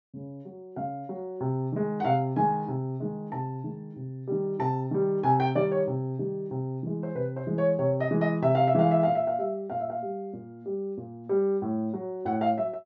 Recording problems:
treble missing; nothing above 7.4 kHz

